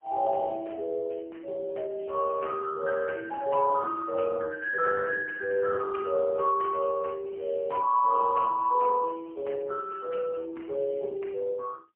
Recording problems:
telephone audio; 340 Hz to 3.1 kHz, AMR-NB, then MP3

